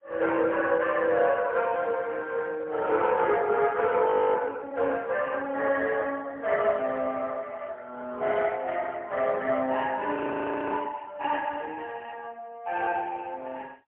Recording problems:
phone line; 220 Hz to 3.3 kHz, AMR-NB, then MP3
audio freezing; at 4 s and at 10 s for 0.5 s

